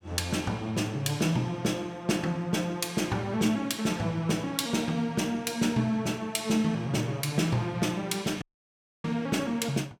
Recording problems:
audio cutting out; at 8.5 s for 0.5 s

